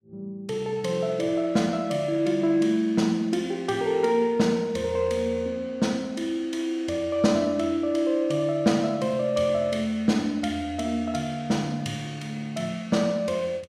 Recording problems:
none

